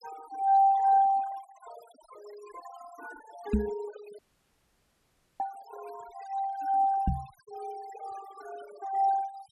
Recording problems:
noise reduction artefacts; signal-to-artefact ratio 19 dB
knock on the microphone; at 3.5 s and at 7 s; peak +5 dB vs average level
dropout; at 4 s for 1 s

